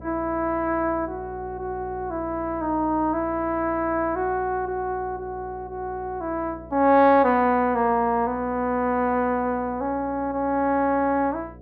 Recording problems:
hum; 60 Hz, harmonics up to 720 Hz, SNR 20 dB

